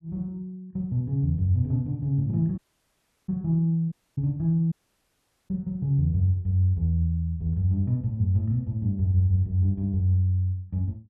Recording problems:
audio cutting out; at 2.5 s for 0.5 s, at 4 s and at 4.5 s for 1 s

